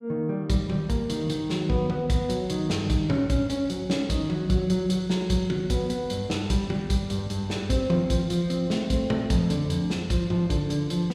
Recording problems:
none

